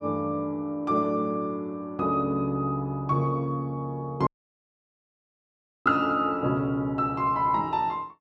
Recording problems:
audio cutting out; at 4.5 s for 1.5 s

